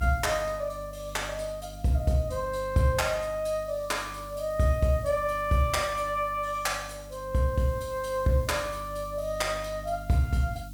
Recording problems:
electrical hum; 50 Hz, harmonics up to 300 Hz, SNR 16 dB
background hiss; SNR 24 dB

